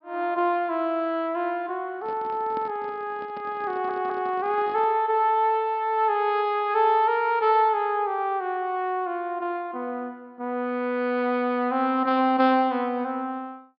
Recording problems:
treble missing; nothing above 5.3 kHz
handling noise; from 2 to 5 s; peak -10 dB vs average level
audio stuttering; at 3.5 s

